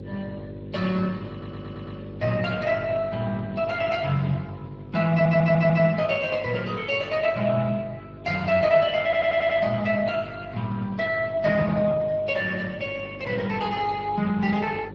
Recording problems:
lossy codec; Speex, log-spectral distance 4 dB
electrical hum; 50 Hz, harmonics up to 550 Hz, SNR 15 dB
stutter; at 1.5 s, at 5 s and at 9 s

